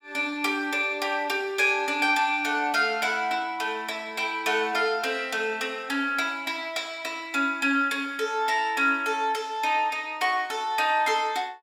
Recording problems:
none

